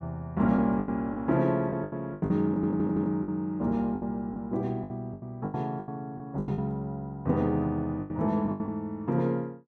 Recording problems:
packet loss; 12% of the sound replaced, filled with the last packet
audio stuttering; at 2.5 s

